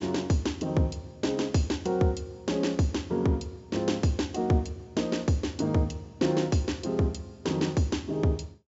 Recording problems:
treble cut off; nothing above 8 kHz

